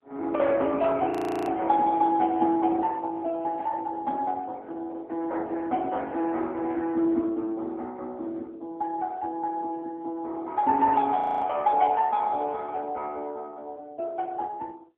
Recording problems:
telephone audio; 240 Hz to 3.6 kHz, AMR-NB
frozen audio; at 1 s and at 11 s

